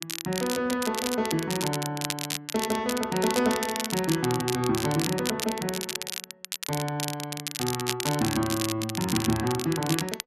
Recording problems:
crackle; vinyl, SNR 4 dB

